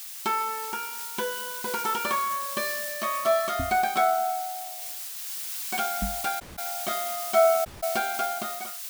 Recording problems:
background hiss; slope +5 dB per octave, SNR 5 dB
microphone bump; at 3.5 s and at 6 s; peak 0 dB vs average level
dropout; at 6.5 s and at 7.5 s

